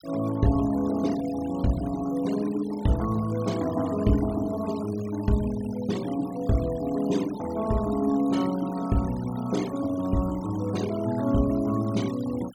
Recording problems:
noise reduction artefacts; signal-to-artefact ratio 18 dB

